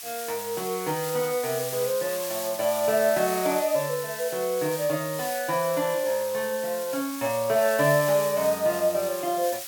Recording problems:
background hiss; slope +3 dB per octave, SNR 8 dB

